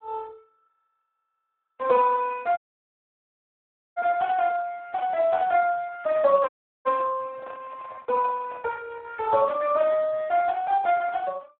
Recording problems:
telephone audio; 110 Hz to 2.5 kHz, Speex
audio cutting out; at 2.5 s for 1.5 s and at 6.5 s
microphone handling noise; from 7.5 to 8.5 s; peak -11 dB vs average level

